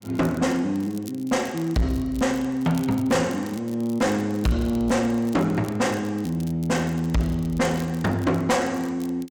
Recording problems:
distortion; soft clipping, signal-to-distortion ratio 7 dB
crackle; vinyl, SNR 23 dB

